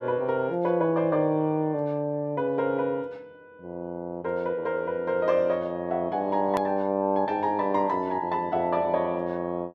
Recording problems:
click at an edit; at 6.5 s

